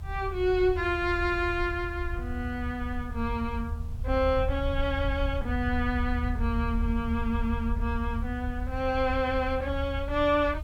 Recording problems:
hiss; SNR 28 dB
low-frequency rumble; below 76 Hz, SNR 5 dB

